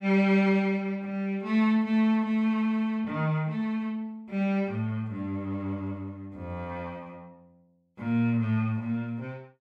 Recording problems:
none

